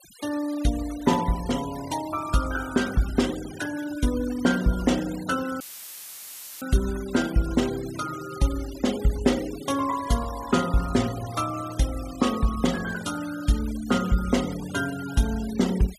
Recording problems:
noise reduction artefacts; signal-to-artefact ratio 15 dB
dropout; at 5.5 s for 1 s; filled with static

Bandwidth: 14.5 kHz